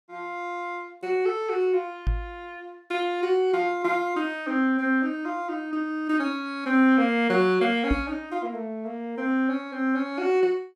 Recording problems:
microphone bump; at 2 s and at 8 s; peak +2 dB vs average level

